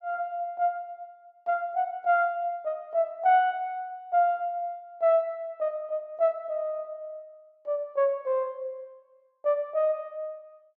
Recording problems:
none

